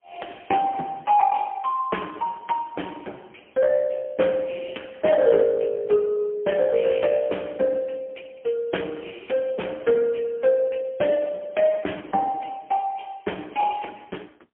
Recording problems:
telephone audio; 220 Hz to 3.3 kHz, AMR-NB, then MP3

